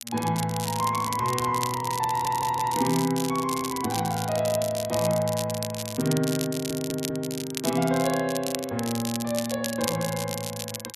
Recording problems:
crackle; vinyl, SNR 7 dB
audio stuttering; at 2 s and at 6.5 s

